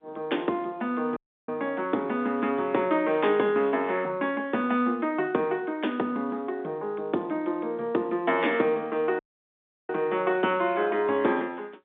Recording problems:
phone line; 220 Hz to 3.8 kHz, G.711
dropout; at 1 s and at 9 s for 0.5 s

